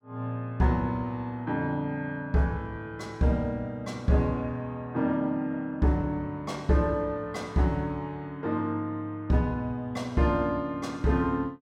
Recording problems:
none

